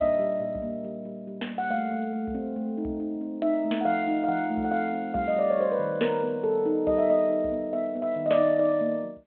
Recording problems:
phone line; 190 Hz to 3.4 kHz, G.726

